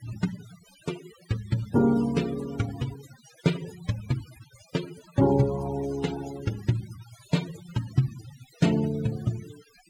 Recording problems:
denoising artefacts; signal-to-artefact ratio 16 dB

